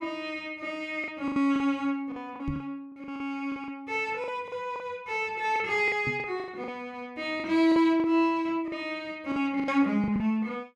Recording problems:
packet loss; 11% of the sound replaced, filled with the last packet
microphone thump; at 2.5 s and at 6 s; peak -2 dB vs average level

